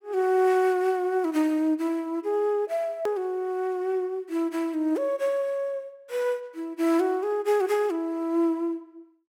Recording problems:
edit click; at 3 s

